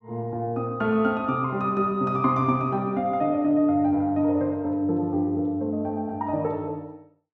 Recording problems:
none

